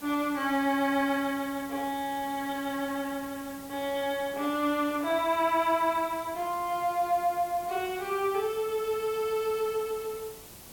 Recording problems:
hiss; SNR 17 dB

